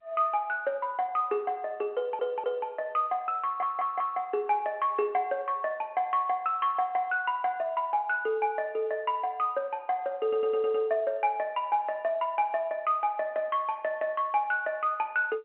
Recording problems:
phone line; 190 Hz to 3.4 kHz, G.711
audio stuttering; at 2 s, at 3.5 s and at 10 s

